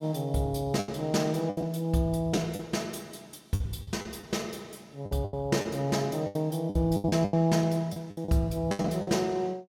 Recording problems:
packet loss; 11% of the sound replaced, filled with the last packet

